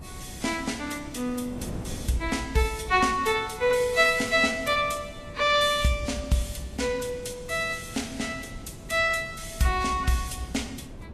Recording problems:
lossy codec; Vorbis, log-spectral distance 5 dB, nothing above 12.3 kHz
wind noise; below 290 Hz, SNR 16 dB

